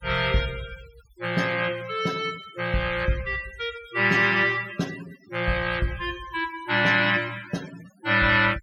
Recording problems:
denoising artefacts; signal-to-artefact ratio 19 dB

